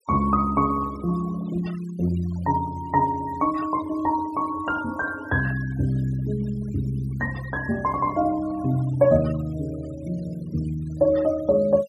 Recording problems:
denoising artefacts; signal-to-artefact ratio 20 dB

